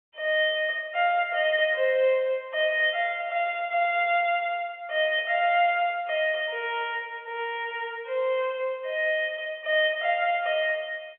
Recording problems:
phone line; 340 Hz to 3.6 kHz, G.711

